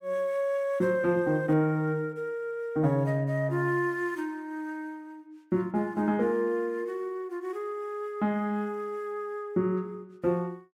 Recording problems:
none

